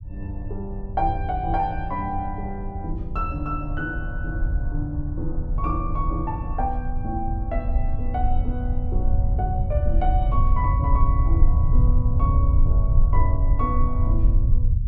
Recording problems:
rumble; below 74 Hz, SNR -5 dB

